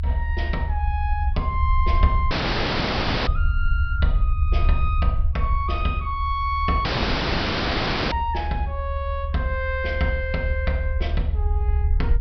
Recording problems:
treble missing; nothing above 5.5 kHz
rumble; below 74 Hz, SNR -2 dB
dropout; at 2.5 s for 1 s and at 7 s for 1.5 s

